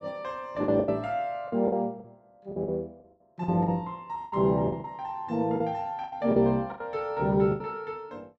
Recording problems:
packet loss; 12% of the sound replaced, filled with the last packet

